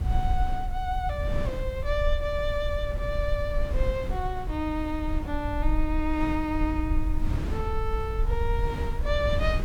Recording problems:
background hiss; slope -2 dB per octave, SNR 27 dB
rumble; below 60 Hz, SNR 1 dB
wind on the microphone; below 260 Hz, SNR 8 dB

